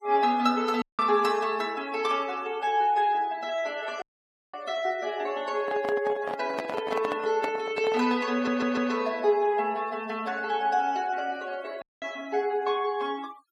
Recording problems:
denoising artefacts; signal-to-artefact ratio 21 dB
dropout; at 1 s, at 4 s for 0.5 s and at 12 s
microphone handling noise; from 5.5 to 8 s; peak -1 dB vs average level
stutter; at 8.5 s

